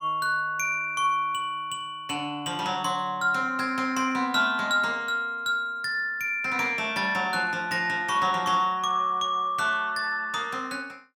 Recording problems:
none

